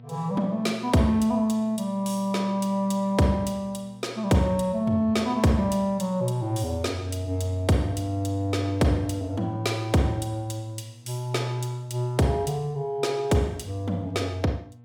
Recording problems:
electrical hum; 60 Hz, harmonics up to 840 Hz, SNR 23 dB

